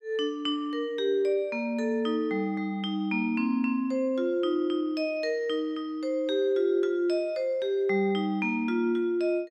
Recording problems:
none

